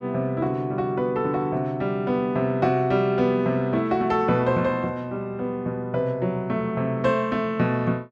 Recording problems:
none

